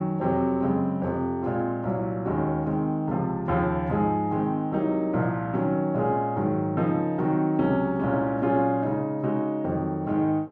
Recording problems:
none

